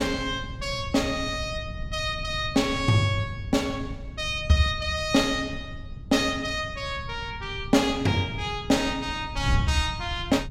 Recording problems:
wind noise; below 130 Hz, SNR 11 dB

